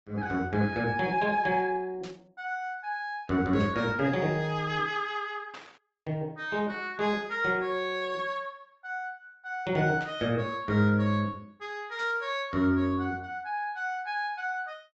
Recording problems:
treble cut off; nothing above 7.1 kHz
lossy codec; Opus, log-spectral distance 2 dB
static burst; 5 times, first at 2 s; peak -11 dB vs average level

